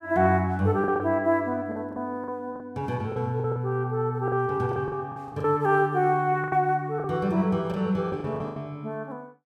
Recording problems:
lost packets; 10% of the sound replaced, filled with the last packet

